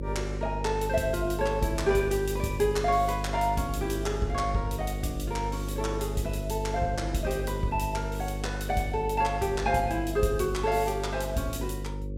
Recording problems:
electrical hum; 50 Hz, harmonics up to 550 Hz, SNR 5 dB

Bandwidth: 16 kHz